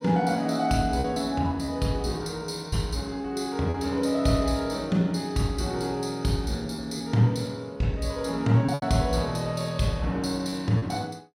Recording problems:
packet loss; 4% of the sound replaced, filled with repeated pitch periods

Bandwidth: 16 kHz